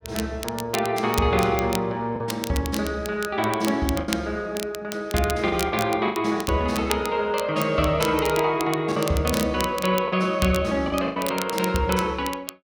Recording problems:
crackling; vinyl, SNR 11 dB
lost packets; 4% of the sound replaced, filled with the last packet

